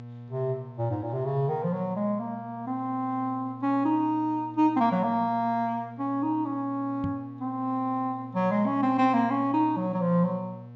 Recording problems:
treble missing; nothing above 8 kHz
hum; 60 Hz, harmonics up to 1.1 kHz, SNR 17 dB
microphone bump; at 7 s; peak -2 dB vs average level

